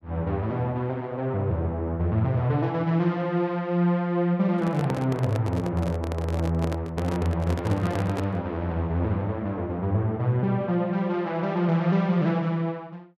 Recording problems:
handling noise; from 4.5 to 8.5 s; peak -3 dB vs average level

